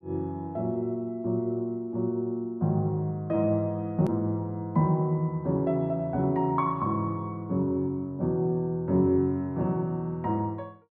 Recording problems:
edit click; at 4 s

